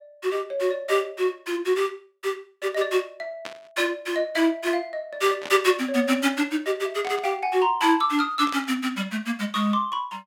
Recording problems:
static burst; 4 times, first at 3.5 s; peak -6 dB vs average level

